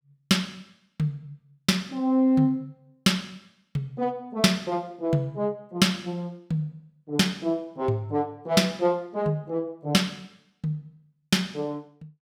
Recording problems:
none

